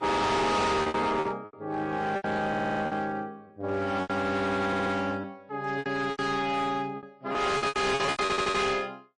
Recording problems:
lossy compression; MP3, then AAC, log-spectral distance 2 dB, nothing above 9.8 kHz
distortion; hard clipping, uneven, signal-to-distortion ratio 6 dB
lost packets; 13% of the sound replaced, filled with repeated pitch periods
stutter; at 2.5 s, at 4.5 s and at 8 s

